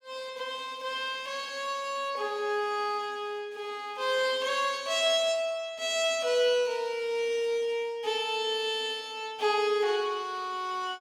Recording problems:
none

